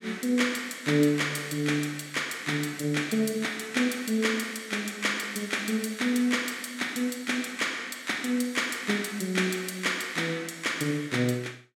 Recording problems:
none

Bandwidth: 16.5 kHz